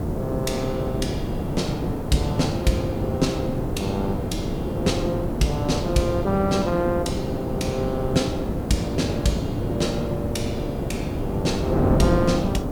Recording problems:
background hiss; slope +3 dB per octave, SNR 24 dB
wind on the microphone; below 400 Hz, SNR 0 dB

